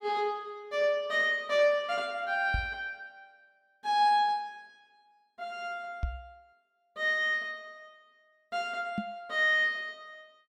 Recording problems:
microphone thump; at 2.5 s, at 6 s and at 9 s; peak 0 dB vs average level

